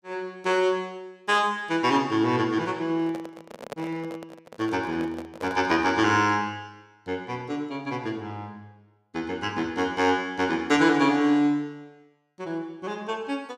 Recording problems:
microphone handling noise; from 3 to 6 s; peak -6 dB vs average level

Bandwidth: 15.5 kHz